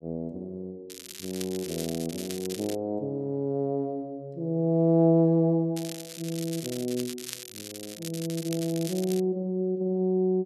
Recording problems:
crackling; from 1 to 3 s and from 6 to 9 s; loose cable, SNR 12 dB

